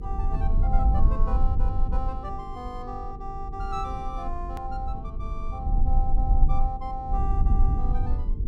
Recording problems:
electrical hum; 50 Hz, harmonics up to 450 Hz, SNR 11 dB
low-frequency rumble; below 56 Hz, strongest tone 22 Hz, SNR -8 dB
edit click; at 4.5 s

